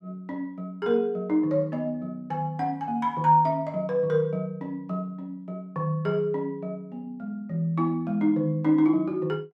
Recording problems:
none

